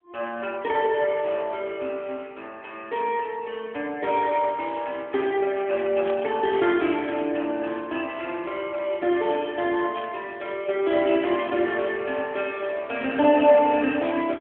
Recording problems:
telephone audio; 240 Hz to 3.5 kHz, AMR-NB
static burst; at 6 s and at 10 s; peak -9 dB vs average level

